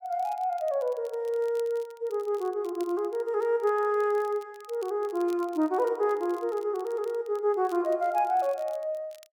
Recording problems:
crackling; vinyl, SNR 27 dB

